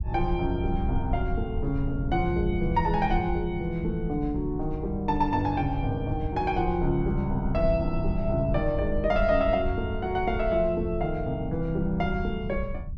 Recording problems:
rumble; below 80 Hz, SNR 7 dB

